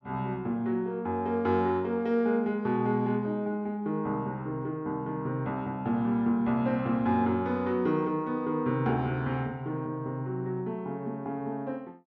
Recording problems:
none

